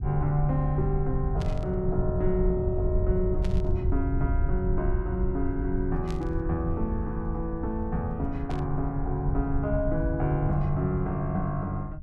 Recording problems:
low-frequency rumble; below 88 Hz, SNR 2 dB
static burst; 4 times, first at 1.5 s; peak -9 dB vs average level

